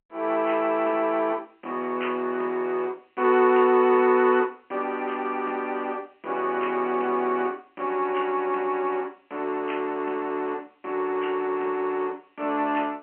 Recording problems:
telephone audio; 260 Hz to 3.1 kHz, G.711

